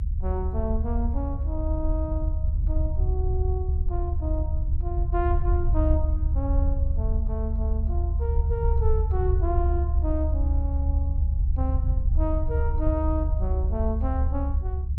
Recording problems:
low-frequency rumble; below 72 Hz, SNR -7 dB

